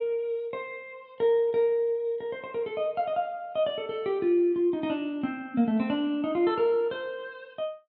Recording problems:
none

